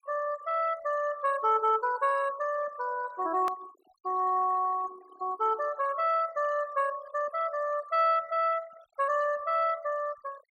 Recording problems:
noise reduction artefacts; signal-to-artefact ratio 21 dB
hard cut with a click; at 3.5 s

